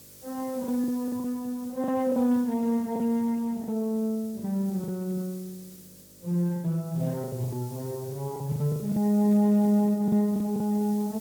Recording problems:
lossy compression; Speex, log-spectral distance 2 dB, nothing above 16 kHz
electrical hum; 50 Hz, harmonics up to 600 Hz, SNR 30 dB
background hiss; SNR 21 dB
packet loss; 10% of the sound replaced, filled with the last packet

